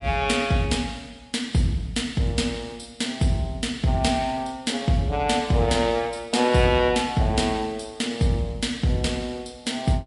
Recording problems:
codec artefacts; MP3, log-spectral distance 3 dB, nothing above 11 kHz

